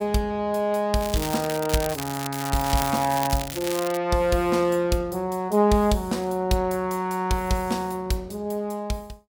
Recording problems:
crackle; from 1 to 4 s; loose cable, SNR 8 dB

